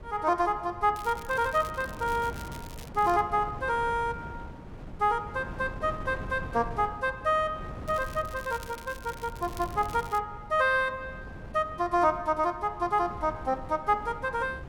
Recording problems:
wind noise; below 360 Hz, SNR 14 dB
crackle; from 1 to 3 s and from 8 to 10 s; loose cable, SNR 20 dB

